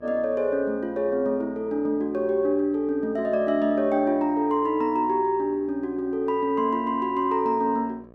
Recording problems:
hum; 60 Hz, harmonics up to 1.7 kHz, SNR 25 dB

